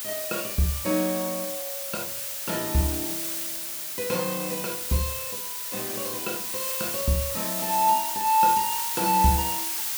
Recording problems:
background hiss; slope +2 dB per octave, SNR 1 dB

